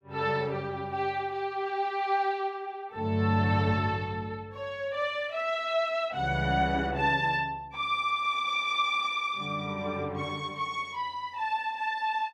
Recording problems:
none

